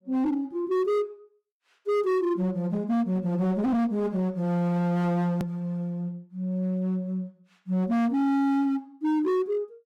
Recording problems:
distortion; hard clipping, signal-to-distortion ratio 7 dB
click at an edit; at 5.5 s

